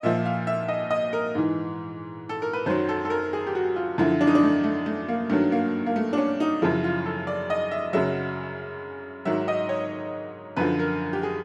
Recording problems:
none

